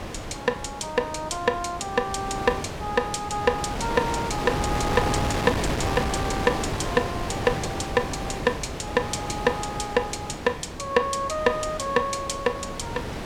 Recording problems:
wind on the microphone; below 1.1 kHz, SNR 4 dB

